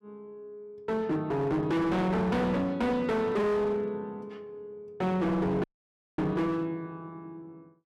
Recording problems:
distorted audio; hard clipping, signal-to-distortion ratio 7 dB
dropout; at 5.5 s for 0.5 s

